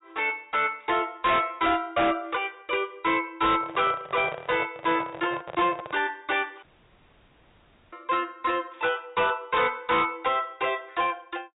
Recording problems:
treble missing; nothing above 4 kHz
distorted audio; hard clipping, signal-to-distortion ratio 11 dB
handling noise; from 3.5 to 6 s; peak -6 dB vs average level
dropout; at 6.5 s for 1.5 s

